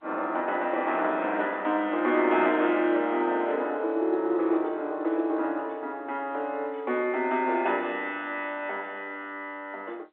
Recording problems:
phone line; 280 Hz to 3.6 kHz, G.711

